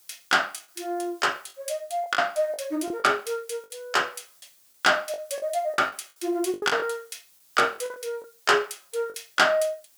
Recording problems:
background hiss; slope +1 dB per octave, SNR 29 dB
lost packets; 9% of the sound replaced, filled with the last packet

